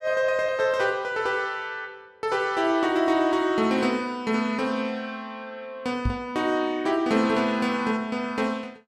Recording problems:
microphone thump; at 6 s; peak +2 dB vs average level

